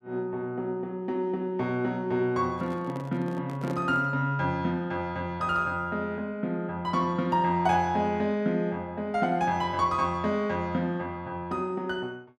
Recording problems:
microphone handling noise; from 2.5 to 4 s; peak -5 dB vs average level

